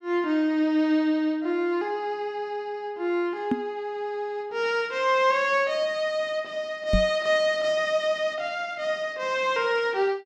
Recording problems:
microphone thump; at 3.5 s and at 7 s; peak +5 dB vs average level

